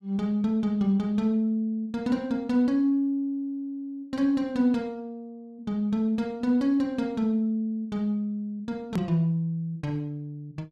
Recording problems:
hard cut with a click; at 9 s

